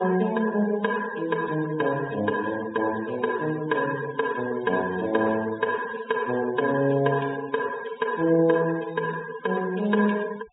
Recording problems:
treble cut off; nothing above 4 kHz
noise reduction artefacts; signal-to-artefact ratio 16 dB

